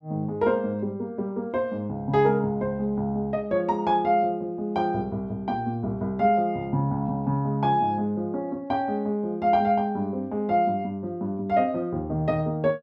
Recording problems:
none

